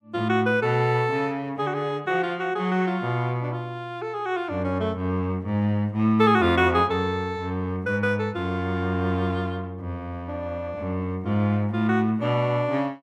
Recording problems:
none

